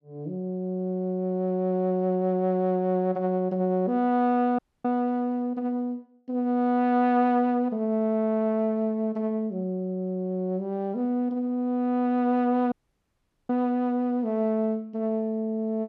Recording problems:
audio cutting out; at 4.5 s and at 13 s for 1 s

